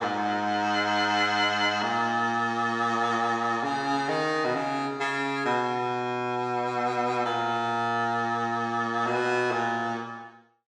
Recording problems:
none

